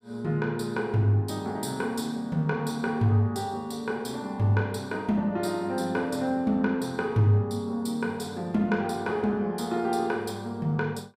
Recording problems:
none

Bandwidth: 15.5 kHz